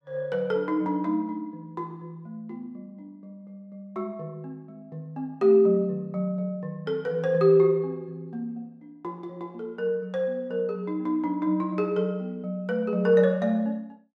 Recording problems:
none

